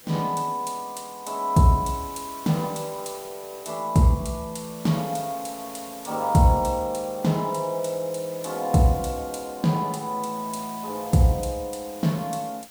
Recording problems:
hiss; slope -1 dB per octave, SNR 18 dB

